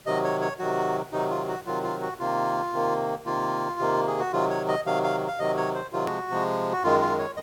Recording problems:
background hiss; slope -3 dB per octave, SNR 24 dB
click at an edit; at 6 s

